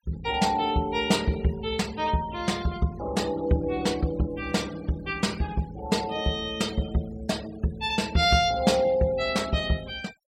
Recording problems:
noise reduction artefacts; signal-to-artefact ratio 19 dB

